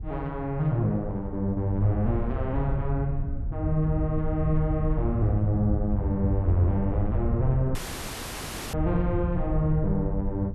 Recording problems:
wind noise; below 98 Hz, SNR 4 dB
audio cutting out; at 8 s for 1 s

